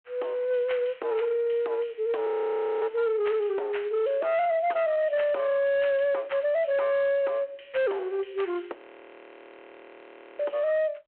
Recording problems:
telephone audio; 370 Hz to 3.2 kHz, G.726
distortion; hard clipping, uneven, signal-to-distortion ratio 11 dB
audio freezing; at 2.5 s for 0.5 s and at 9 s for 1.5 s

